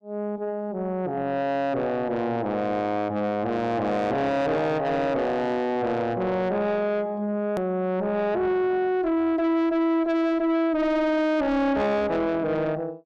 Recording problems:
distortion; soft clipping, signal-to-distortion ratio 7 dB
hard cut with a click; at 7.5 s

